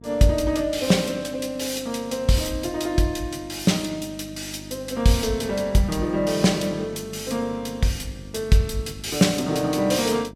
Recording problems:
electrical hum; 50 Hz, harmonics up to 650 Hz, SNR 19 dB

